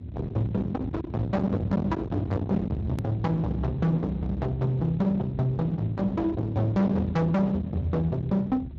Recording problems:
codec artefacts; Speex, log-spectral distance 2 dB, nothing above 13.1 kHz
distorted audio; hard clipping, uneven, signal-to-distortion ratio 6 dB
hum; 50 Hz, harmonics up to 400 Hz, SNR 21 dB
low-frequency rumble; below 330 Hz, SNR 8 dB
edit click; at 3 s

